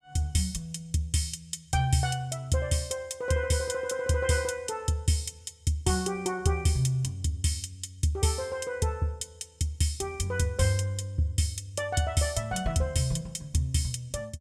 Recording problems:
none

